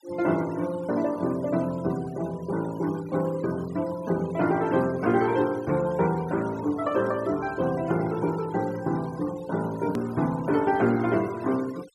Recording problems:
noise reduction artefacts; signal-to-artefact ratio 20 dB
click at an edit; at 10 s

